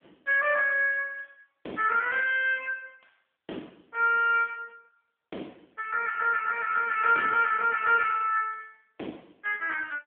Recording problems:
phone line; 280 Hz to 3.3 kHz, AMR-NB

